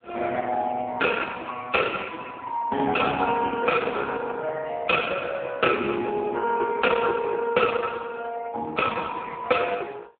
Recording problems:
phone line; 170 Hz to 3.4 kHz, AMR-NB

